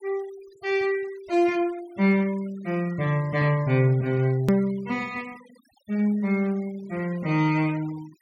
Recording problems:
denoising artefacts; signal-to-artefact ratio 24 dB
hard cut with a click; at 4.5 s

